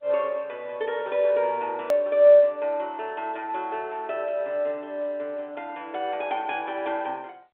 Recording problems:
phone line; 220 Hz to 3.9 kHz, G.711
click at an edit; at 2 s

